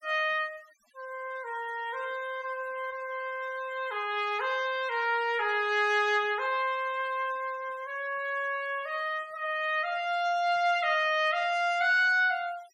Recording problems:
noise reduction artefacts; signal-to-artefact ratio 23 dB

